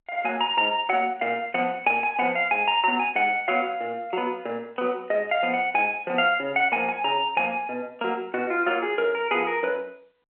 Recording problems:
telephone audio; 300 Hz to 3.3 kHz, G.711

